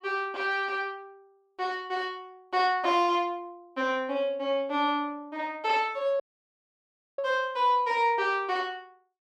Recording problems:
audio cutting out; at 6 s for 1 s

